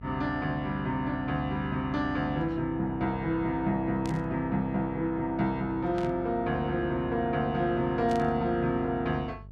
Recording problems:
hum; 50 Hz, harmonics up to 450 Hz, SNR 17 dB
static burst; at 4 s, at 6 s and at 8 s; peak -11 dB vs average level

